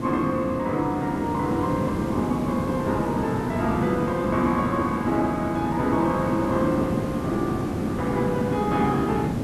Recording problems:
background hiss; slope -9 dB per octave, SNR 2 dB

